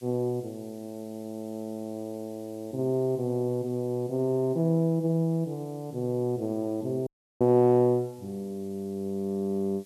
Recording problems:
hiss; slope +3 dB per octave, SNR 28 dB
audio cutting out; at 7 s

